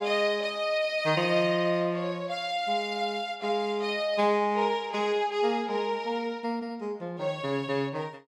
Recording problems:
none

